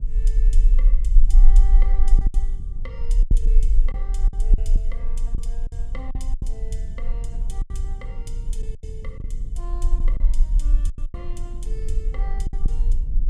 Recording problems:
rumble; below 38 Hz, strongest tone 28 Hz, SNR -17 dB
wind on the microphone; below 110 Hz, SNR -1 dB
lost packets; 8% of the sound replaced, filled with silence

